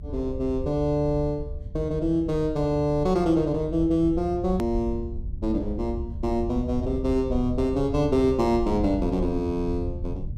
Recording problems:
low-frequency rumble; below 84 Hz, SNR 9 dB
click at an edit; at 4.5 s

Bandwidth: 14 kHz